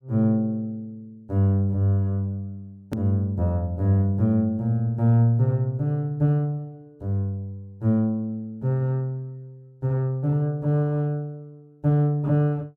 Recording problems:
hard cut with a click; at 3 s

